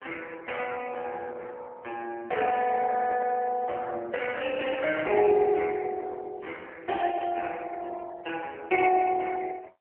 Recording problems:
telephone audio; 300 Hz to 3.2 kHz, AMR-NB

